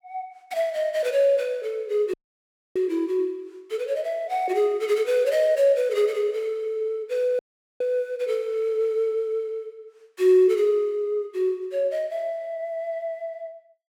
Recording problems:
dropout; at 2 s for 0.5 s and at 7.5 s

